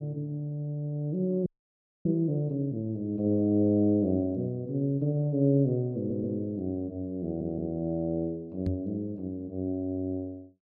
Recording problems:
frozen audio; at 1.5 s for 0.5 s
audio stuttering; at 6 s and at 7 s
microphone thump; at 8.5 s; peak 0 dB vs average level

